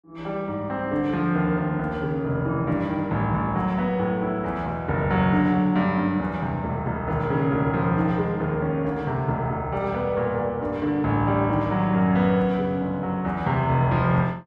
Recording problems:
none

